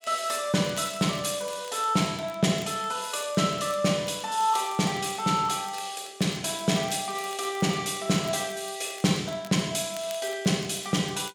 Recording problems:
crackle; vinyl, SNR 22 dB

